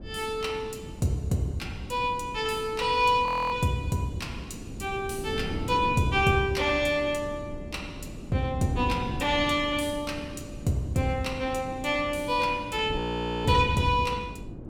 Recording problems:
wind noise; below 300 Hz, SNR 11 dB
frozen audio; at 3.5 s and at 13 s

